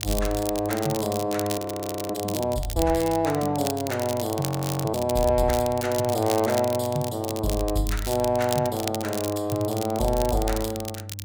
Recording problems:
electrical hum; 50 Hz, harmonics up to 500 Hz, SNR 14 dB
crackling; vinyl, SNR 10 dB
frozen audio; at 1.5 s for 0.5 s and at 4.5 s

